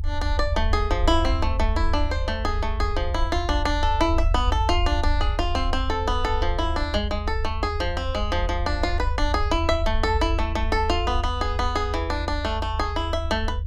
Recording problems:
rumble; below 80 Hz, SNR 2 dB

